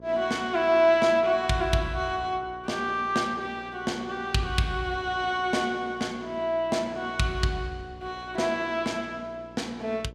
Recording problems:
electrical hum; 60 Hz, harmonics up to 1.1 kHz, SNR 22 dB

